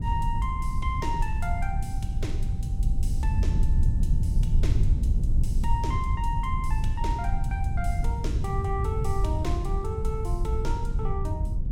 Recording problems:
low-frequency rumble; below 90 Hz, SNR -6 dB

